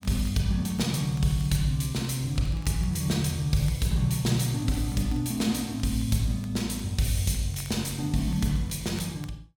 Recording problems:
crackle; vinyl, SNR 28 dB

